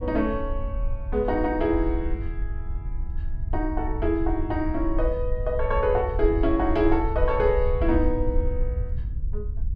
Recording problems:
rumble; below 64 Hz, SNR 5 dB

